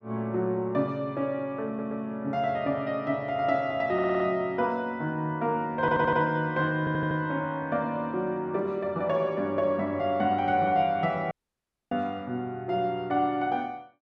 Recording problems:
audio stuttering; 4 times, first at 1.5 s
audio cutting out; at 11 s for 0.5 s

